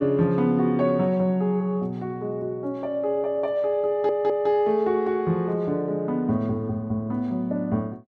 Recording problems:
stutter; at 4 s

